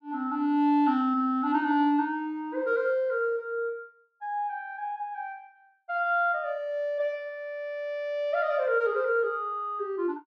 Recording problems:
none

